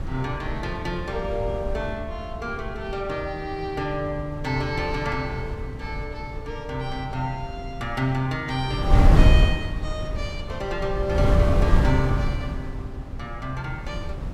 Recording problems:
wind noise; below 120 Hz, SNR -2 dB

